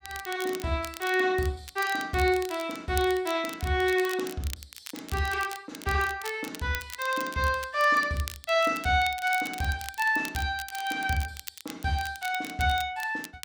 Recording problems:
crackle; vinyl, SNR 14 dB

